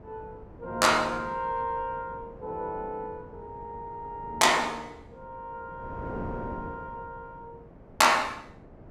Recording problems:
wind on the microphone; below 460 Hz, SNR 18 dB

